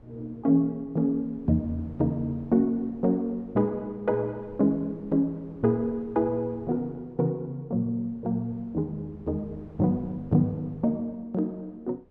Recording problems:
wind on the microphone; below 360 Hz, SNR 24 dB

